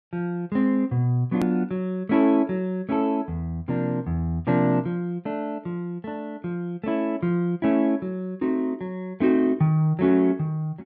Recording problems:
low-pass filter; nothing above 6.2 kHz
click at an edit; at 1.5 s

